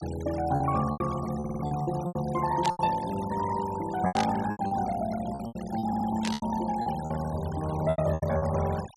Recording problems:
denoising artefacts; signal-to-artefact ratio 15 dB
lost packets; 13% of the sound replaced, filled with repeated pitch periods
audio stuttering; at 1.5 s and at 6 s
static burst; at 2.5 s, at 4 s and at 6 s; peak 0 dB vs average level

